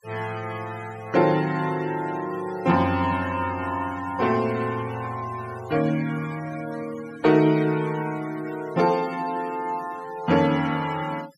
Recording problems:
denoising artefacts; signal-to-artefact ratio 18 dB

